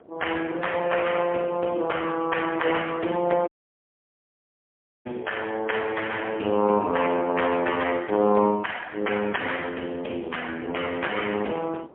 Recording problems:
telephone audio; 220 Hz to 3.3 kHz, AMR-NB, then MP3
wind on the microphone; below 580 Hz, SNR 23 dB
audio cutting out; at 3.5 s for 1.5 s

